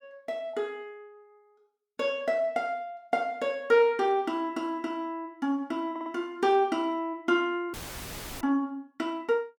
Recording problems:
audio stuttering; at 6 s
dropout; at 7.5 s for 0.5 s; filled with static

